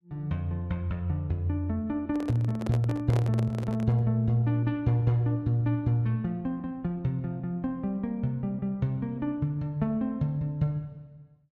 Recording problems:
microphone handling noise; from 2 to 4 s; peak -3 dB vs average level

